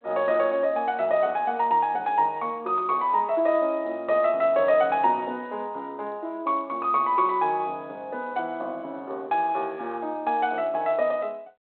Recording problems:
telephone audio; 280 Hz to 3.4 kHz, G.726

